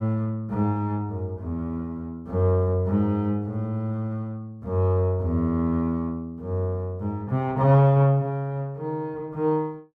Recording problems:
none

